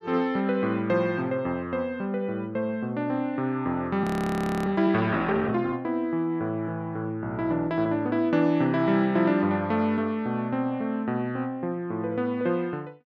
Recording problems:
audio freezing; at 4 s for 0.5 s

